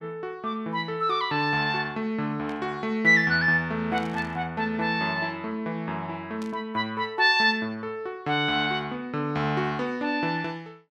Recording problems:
static burst; at 2.5 s, at 4 s and at 6.5 s; peak -15 dB vs average level

